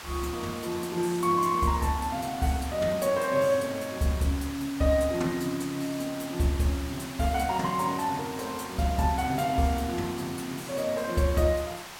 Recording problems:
hiss; SNR 12 dB

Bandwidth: 16.5 kHz